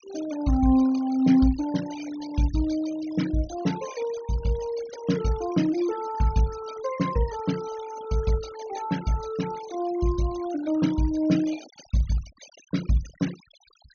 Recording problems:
treble missing; nothing above 6.4 kHz
denoising artefacts; signal-to-artefact ratio 18 dB

